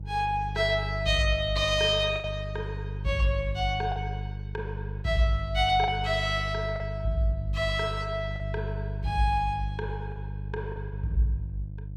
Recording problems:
hum; 50 Hz, harmonics up to 350 Hz, SNR 7 dB
packet loss; 3% of the sound replaced, filled with the last packet

